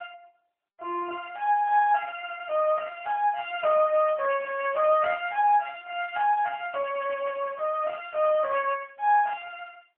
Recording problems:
phone line; 370 Hz to 3.3 kHz, AMR-NB

